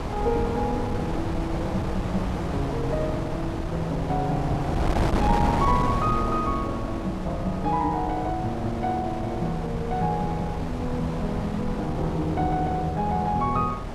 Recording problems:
wind on the microphone; below 600 Hz, SNR 3 dB

